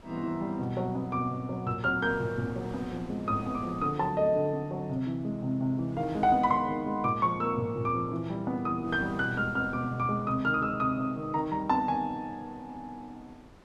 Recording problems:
wind on the microphone; below 890 Hz, SNR 21 dB

